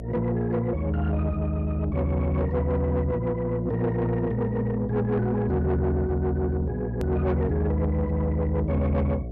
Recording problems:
distorted audio; soft clipping, signal-to-distortion ratio 12 dB
electrical hum; 60 Hz, harmonics up to 720 Hz, SNR 12 dB
edit click; at 7 s

